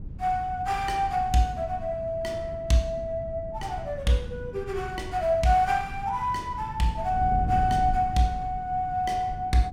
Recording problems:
wind on the microphone; below 140 Hz, SNR 11 dB

